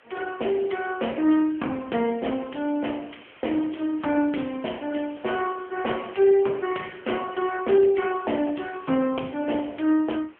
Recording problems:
phone line; 220 Hz to 3.2 kHz, AMR-NB
background hiss; SNR 27 dB

